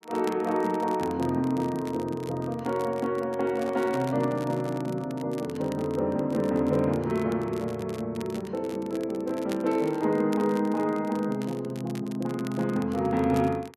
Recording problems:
crackle; vinyl, SNR 21 dB
microphone handling noise; from 3.5 to 5 s; peak -8 dB vs average level

